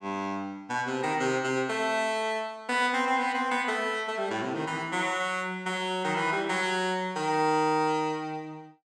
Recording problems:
none

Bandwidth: 16.5 kHz